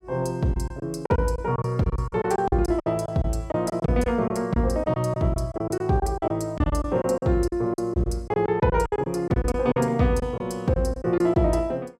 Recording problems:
packet loss; 13% of the sound replaced, filled with silence

